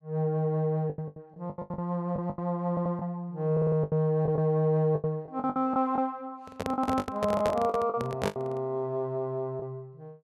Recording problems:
packet loss; 13% of the sound replaced, filled with the last packet
audio stuttering; at 2.5 s, at 3.5 s and at 8.5 s
handling noise; from 6.5 to 8.5 s; peak +2 dB vs average level

